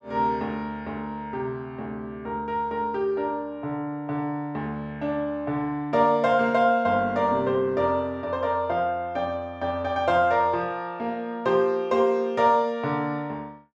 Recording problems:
none

